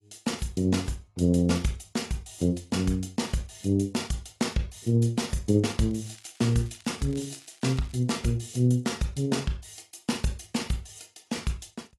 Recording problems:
lossy codec; AAC, log-spectral distance 6 dB, nothing above 11.3 kHz
crackling; from 6 to 8 s; loose cable, SNR 24 dB

